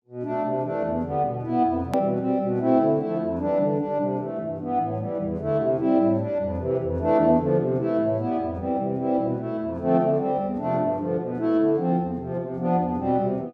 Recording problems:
click at an edit; at 2 s

